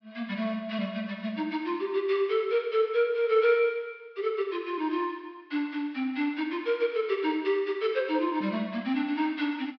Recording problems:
treble missing; nothing above 5.5 kHz

